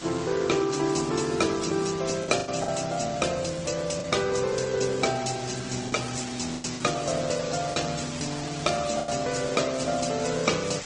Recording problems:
lossy compression; MP3, then Opus, log-spectral distance 14 dB, nothing above 8.2 kHz
background hiss; slope 0 dB per octave, SNR 10 dB
lost packets; 4% of the sound replaced, filled with the last packet

